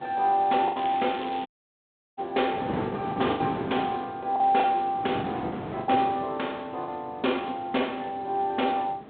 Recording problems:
telephone audio; 220 Hz to 3.6 kHz, G.726
wind noise; below 680 Hz, SNR 9 dB
lost packets; 7% of the sound replaced, filled with the last packet
crackling; at 1 s; loose cable, SNR 16 dB
dropout; at 1.5 s for 0.5 s

